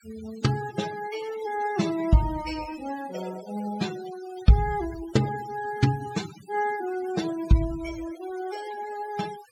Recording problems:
noise reduction artefacts; signal-to-artefact ratio 14 dB

